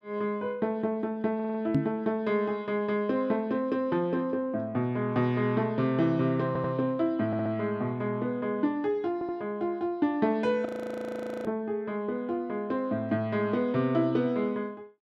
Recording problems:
stutter; 4 times, first at 1.5 s
microphone thump; at 2 s; peak +7 dB vs average level
audio freezing; at 11 s for 1 s

